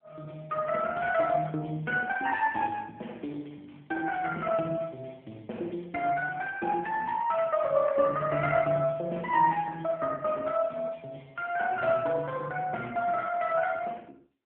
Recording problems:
phone line; 190 Hz to 3.3 kHz, AMR-NB

